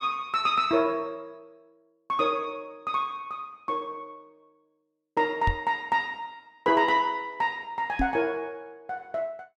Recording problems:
knock on the microphone; at 5.5 s and at 8 s; peak +3 dB vs average level

